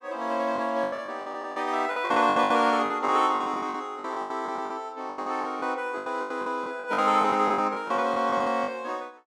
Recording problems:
lost packets; 18% of the sound replaced, filled with the last packet

